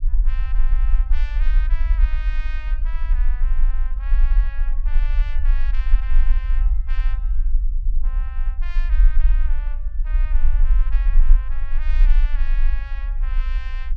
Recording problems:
low-frequency rumble; below 40 Hz, strongest tone 20 Hz, SNR -18 dB

